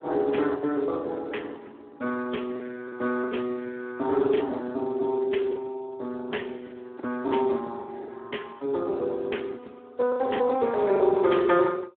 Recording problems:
telephone audio; 280 Hz to 3.4 kHz, Speex
lost packets; 6% of the sound replaced, filled with the last packet

